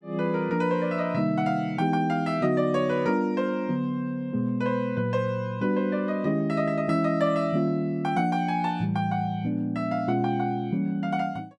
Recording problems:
none

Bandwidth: 12.5 kHz